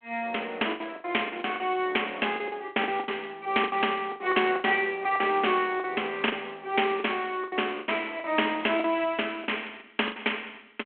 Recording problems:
phone line; 260 Hz to 3.4 kHz, G.726
packet loss; 13% of the sound replaced, filled with the last packet

